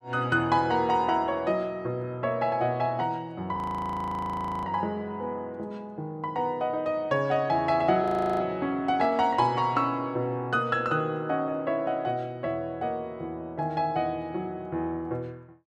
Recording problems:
frozen audio; at 3.5 s for 1 s and at 8 s

